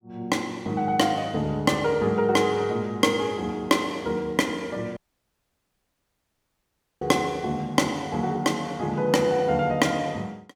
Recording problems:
audio cutting out; at 5 s for 2 s

